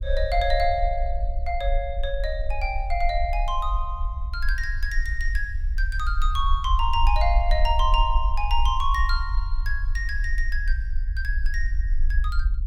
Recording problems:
low-frequency rumble; below 50 Hz, SNR 0 dB

